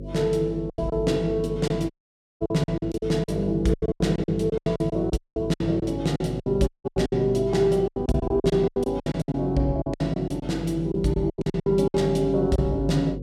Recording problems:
hum; 50 Hz, harmonics up to 550 Hz, SNR 12 dB
lost packets; 16% of the sound replaced, filled with silence
dropout; at 2 s for 0.5 s, at 5 s and at 6.5 s

